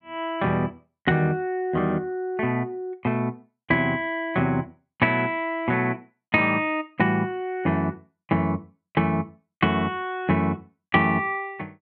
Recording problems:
none

